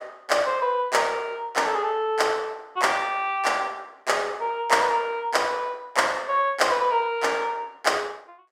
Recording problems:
none

